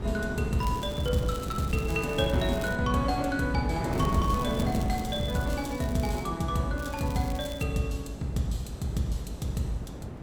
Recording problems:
wind noise; below 380 Hz, SNR 8 dB
crackle; from 0.5 to 3 s, from 4 to 6 s and at 7 s; loose cable, SNR 18 dB

